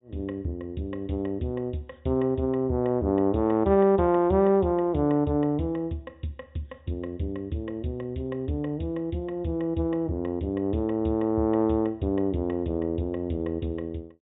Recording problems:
low-pass filter; nothing above 4 kHz

